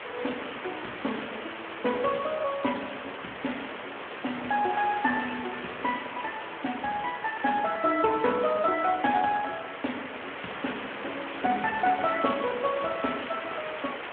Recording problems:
phone line; 240 Hz to 3 kHz, Speex
hiss; SNR 8 dB

